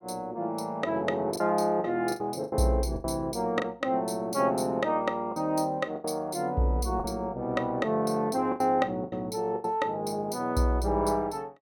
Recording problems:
lost packets; 7% of the sound replaced, filled with the last packet

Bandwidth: 17.5 kHz